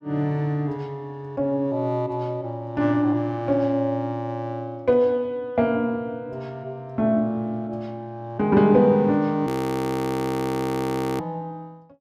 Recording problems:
frozen audio; at 9.5 s for 1.5 s

